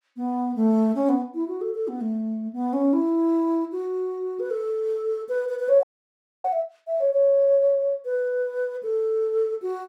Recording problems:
audio freezing; at 6 s for 0.5 s

